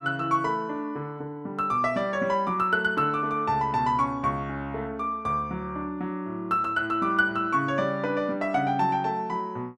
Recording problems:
none

